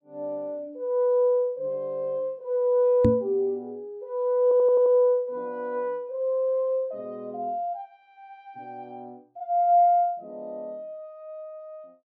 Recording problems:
microphone bump; at 3 s; peak +6 dB vs average level
audio stuttering; at 4.5 s

